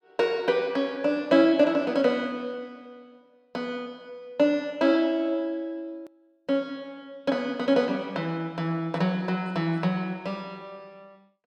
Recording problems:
hard cut with a click; at 6 s

